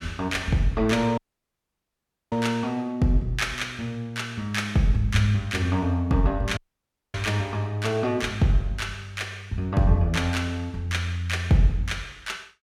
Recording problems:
audio cutting out; at 1 s for 1 s and at 6.5 s for 0.5 s

